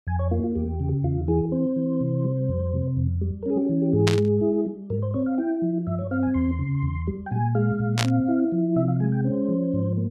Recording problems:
static burst; at 4 s and at 8 s; peak +3 dB vs average level

